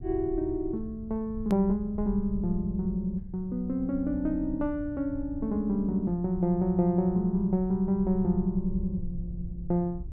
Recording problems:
rumble; below 96 Hz, SNR 13 dB
click at an edit; at 1.5 s

